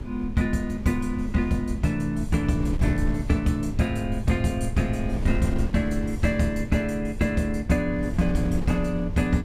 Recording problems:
rumble; below 100 Hz, SNR 12 dB
wind noise; below 110 Hz, SNR 9 dB

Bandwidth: 15.5 kHz